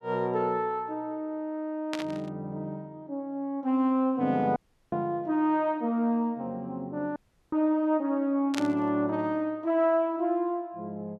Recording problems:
static burst; at 2 s and at 8.5 s; peak -1 dB vs average level
audio cutting out; at 4.5 s and at 7 s

